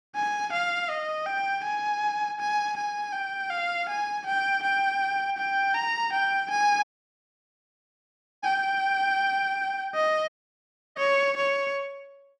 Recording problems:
audio cutting out; at 7 s for 1.5 s and at 10 s for 0.5 s

